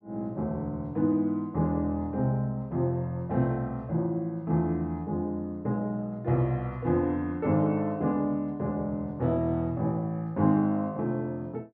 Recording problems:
none

